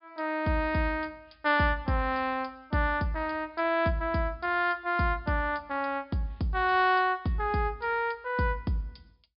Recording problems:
treble missing; nothing above 5.5 kHz

